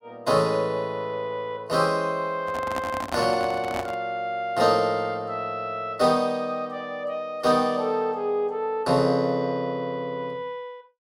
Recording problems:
microphone handling noise; from 2.5 to 4 s; peak 0 dB vs average level

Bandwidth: 16 kHz